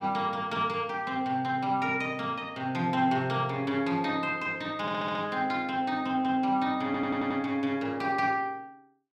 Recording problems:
stutter; at 5 s and at 7 s

